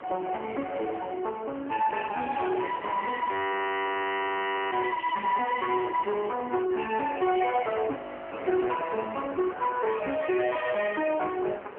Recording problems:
phone line; 260 Hz to 2.9 kHz, AMR-NB
distortion; soft clipping, signal-to-distortion ratio 12 dB
wind on the microphone; below 1.4 kHz, SNR 14 dB
audio freezing; at 3.5 s for 1.5 s and at 8 s

